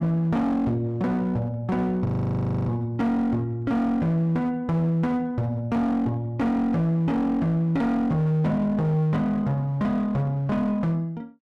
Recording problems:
distorted audio; hard clipping, uneven, signal-to-distortion ratio 10 dB
frozen audio; at 2 s for 0.5 s

